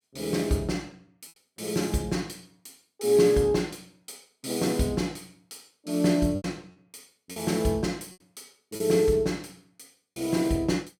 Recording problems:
packet loss; 3% of the sound replaced, filled with repeated pitch periods

